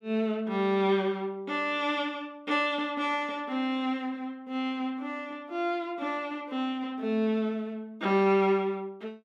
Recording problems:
none

